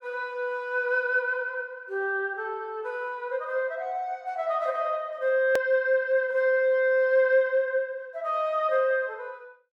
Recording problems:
hard cut with a click; at 5.5 s

